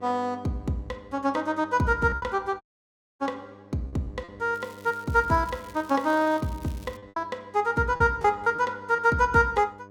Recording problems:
hum; 50 Hz, harmonics up to 1.2 kHz, SNR 22 dB
packet loss; 6% of the sound replaced, filled with repeated pitch periods
audio cutting out; at 2.5 s for 0.5 s
crackling; from 4.5 to 7 s; loose cable, SNR 25 dB

